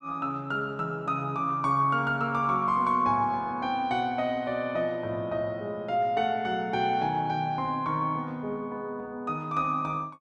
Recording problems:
none

